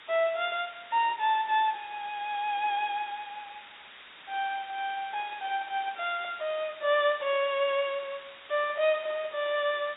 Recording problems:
low-pass filter; nothing above 4 kHz
background hiss; SNR 18 dB

